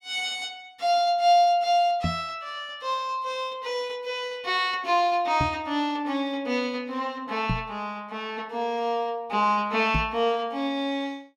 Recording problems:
microphone thump; 4 times, first at 2 s; peak +2 dB vs average level

